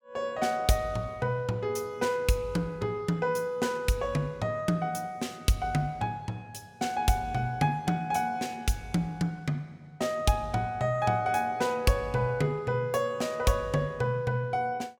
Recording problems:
none

